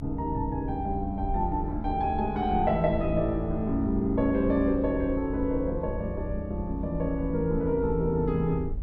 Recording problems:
rumble; below 78 Hz, SNR 9 dB

